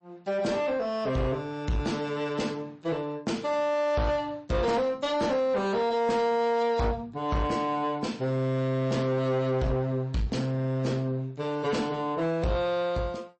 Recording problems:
codec artefacts; MP3, log-spectral distance 2 dB, nothing above 8.2 kHz
distortion; soft clipping, signal-to-distortion ratio 10 dB

